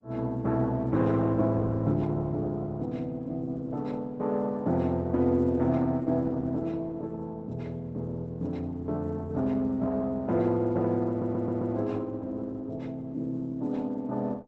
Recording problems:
lossy compression; Opus, log-spectral distance 2 dB, nothing above 7.6 kHz
audio stuttering; at 11 s

